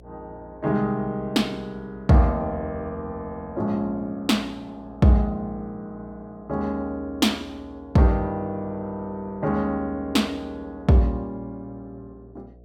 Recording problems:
hum; 60 Hz, harmonics up to 720 Hz, SNR 25 dB

